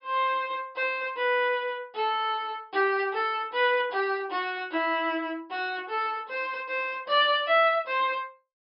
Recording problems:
low-pass filter; nothing above 5.5 kHz

